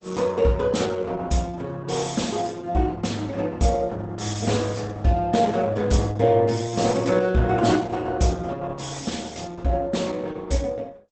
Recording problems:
lossy compression; Opus, log-spectral distance 5 dB, nothing above 8 kHz

